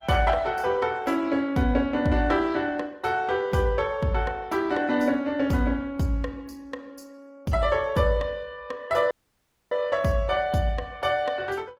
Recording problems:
codec artefacts; Opus, log-spectral distance 3 dB, nothing above 19 kHz
audio cutting out; at 9 s for 0.5 s

